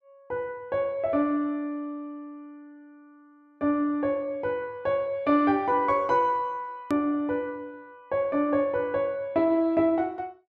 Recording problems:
hard cut with a click; at 7 s

